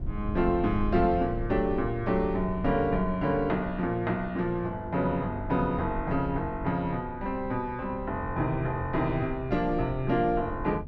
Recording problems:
rumble; below 90 Hz, SNR 11 dB

